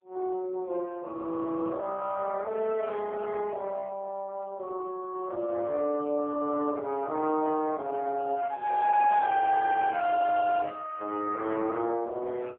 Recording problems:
phone line; 260 Hz to 3.1 kHz, AMR-NB

